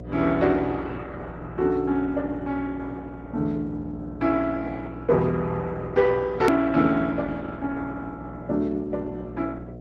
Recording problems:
lossy codec; Opus, log-spectral distance 3 dB, nothing above 13.1 kHz
electrical hum; 60 Hz, harmonics up to 720 Hz, SNR 14 dB
hard cut with a click; at 6.5 s

